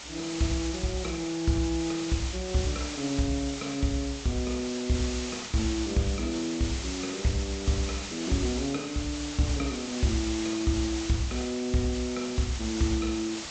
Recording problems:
low-pass filter; nothing above 8 kHz
hiss; slope 0 dB per octave, SNR 7 dB

